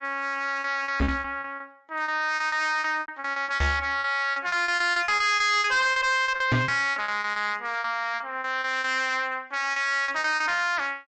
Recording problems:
treble missing; nothing above 7.8 kHz
codec artefacts; MP3, log-spectral distance 2 dB
distortion; hard clipping, signal-to-distortion ratio 6 dB
lost packets; 16% of the sound replaced, filled with repeated pitch periods
knock on the microphone; at 1 s, at 3.5 s and at 6.5 s; peak +4 dB vs average level

